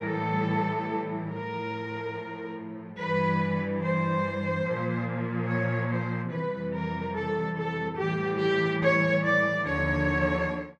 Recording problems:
none

